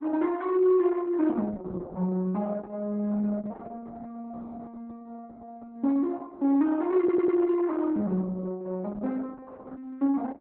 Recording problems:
lossy codec; Opus, log-spectral distance 3 dB
audio stuttering; at 7 s

